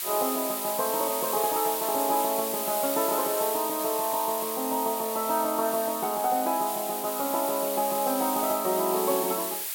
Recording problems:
background hiss; SNR 3 dB

